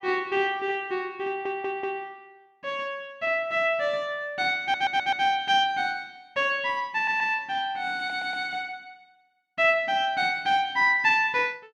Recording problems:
audio stuttering; 4 times, first at 1.5 s

